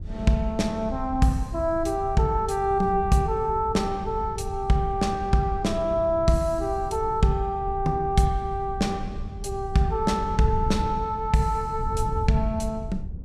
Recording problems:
wind noise; below 98 Hz, SNR 10 dB

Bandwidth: 14.5 kHz